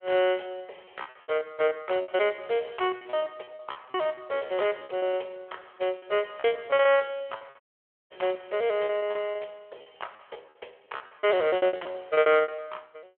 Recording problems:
phone line; 320 Hz to 3.3 kHz, Speex
lost packets; 19% of the sound replaced, filled with repeated pitch periods
audio cutting out; at 7.5 s for 0.5 s

